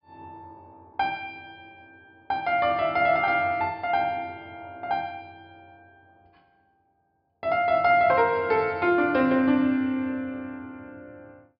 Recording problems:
low-pass filter; nothing above 5.5 kHz

